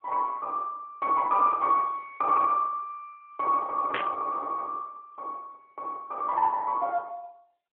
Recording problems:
telephone audio; 300 Hz to 3.6 kHz, AMR-NB
burst of static; at 4 s; peak 0 dB vs average level

